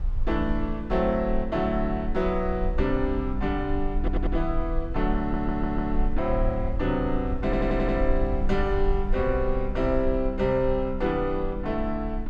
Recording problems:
rumble; below 52 Hz, strongest tone 20 Hz, SNR 6 dB
stutter; at 4 s, at 5 s and at 7.5 s

